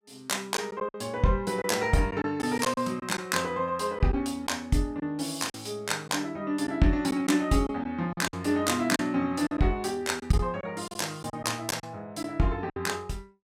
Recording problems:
packet loss; 6% of the sound replaced, filled with silence

